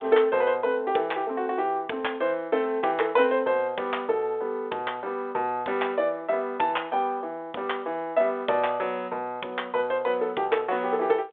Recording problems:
telephone audio; 300 Hz to 3.6 kHz, G.726

